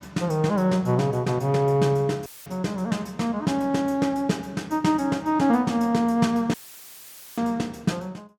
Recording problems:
dropout; at 2.5 s and at 6.5 s for 1 s; filled with static

